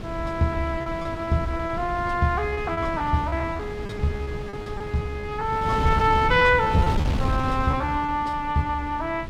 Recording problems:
wind noise; below 240 Hz, SNR 7 dB
lost packets; 16% of the sound replaced, filled with repeated pitch periods

